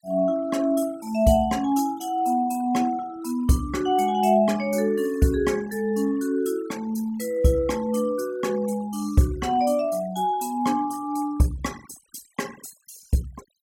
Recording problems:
noise reduction artefacts; signal-to-artefact ratio 22 dB

